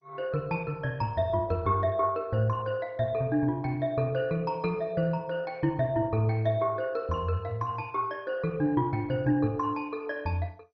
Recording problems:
lossy compression; MP2, log-spectral distance 2 dB, nothing above 5.2 kHz

